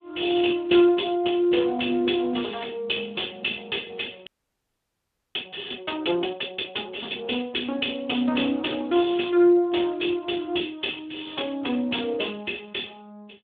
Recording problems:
telephone audio; 260 Hz to 3.6 kHz, Speex
audio freezing; at 4.5 s for 1 s

